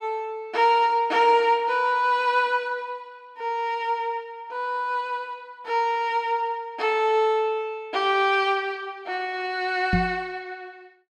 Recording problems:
knock on the microphone; at 10 s; peak +4 dB vs average level

